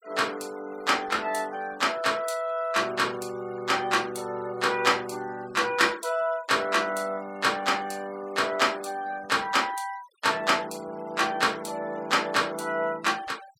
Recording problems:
denoising artefacts; signal-to-artefact ratio 23 dB

